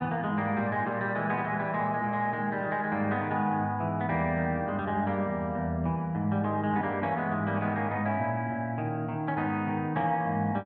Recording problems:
none

